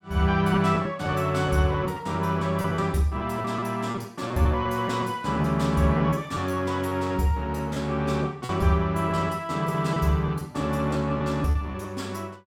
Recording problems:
packet loss; 8% of the sound replaced, filled with repeated pitch periods

